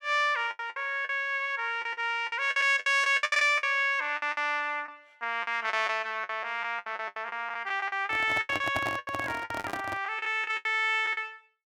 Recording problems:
lost packets; 16% of the sound replaced, filled with the last packet
microphone handling noise; from 8 to 10 s; peak -1 dB vs average level

